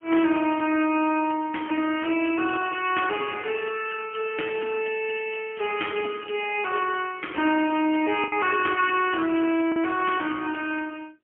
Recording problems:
phone line; 220 Hz to 3.1 kHz, AMR-NB, then MP3
packet loss; 1.1% of the sound replaced, filled with the last packet

